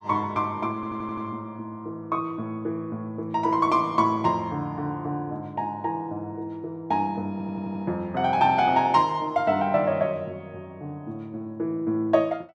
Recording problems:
stutter; at 1 s and at 7.5 s

